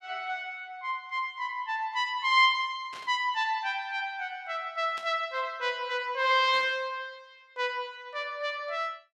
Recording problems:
burst of static; at 3 s, at 5 s and at 6.5 s; peak -11 dB vs average level

